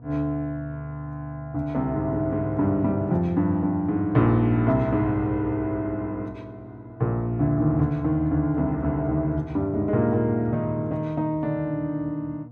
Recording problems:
hum; 60 Hz, harmonics up to 960 Hz, SNR 23 dB

